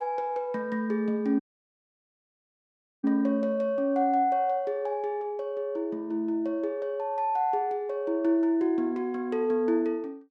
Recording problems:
dropout; at 1.5 s for 1.5 s

